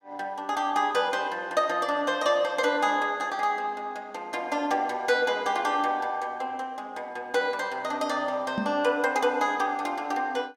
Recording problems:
knock on the microphone; at 8.5 s; peak +1 dB vs average level

